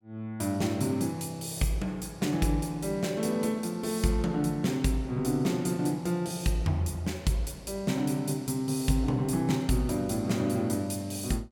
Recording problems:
none

